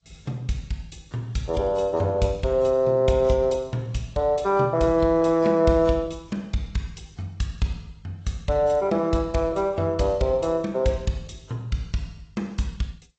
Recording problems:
lossy codec; AAC, then G.722, log-spectral distance 3 dB, nothing above 7.6 kHz

